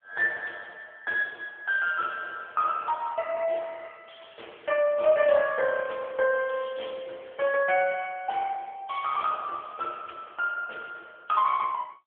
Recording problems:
telephone audio; 370 Hz to 3.4 kHz, AMR-NB

